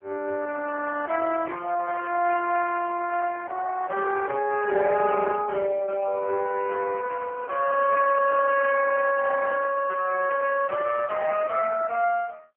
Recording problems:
telephone audio; 260 Hz to 2.8 kHz, AMR-NB

